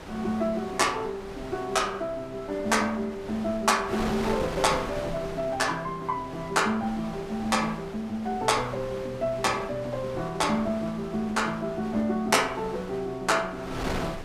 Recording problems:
wind on the microphone; below 1.5 kHz, SNR 11 dB

